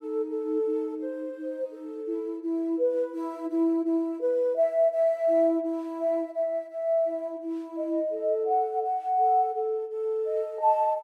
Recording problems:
none

